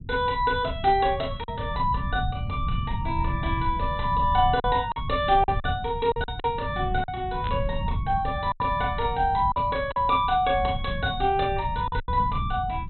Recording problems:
treble missing; nothing above 4 kHz
low-frequency rumble; below 120 Hz, SNR 7 dB
lost packets; 5% of the sound replaced, filled with silence
static burst; at 7.5 s; peak -8 dB vs average level

